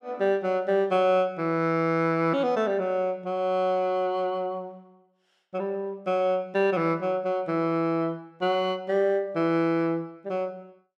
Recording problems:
none

